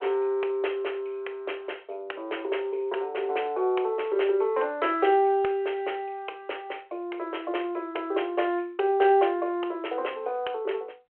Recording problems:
phone line; 320 Hz to 3.3 kHz, G.726

